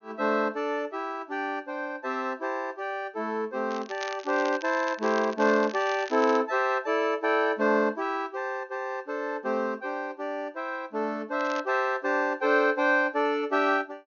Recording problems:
low-pass filter; nothing above 6.7 kHz
crackle; from 3.5 to 6.5 s and at 11 s; loose cable, SNR 16 dB

